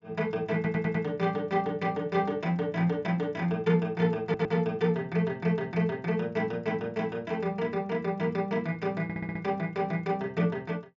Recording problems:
treble missing; nothing above 8 kHz
audio stuttering; at 0.5 s, at 4 s and at 9 s

